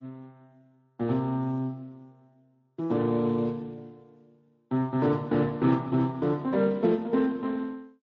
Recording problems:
lossy codec; Speex, then MP3, log-spectral distance 2 dB

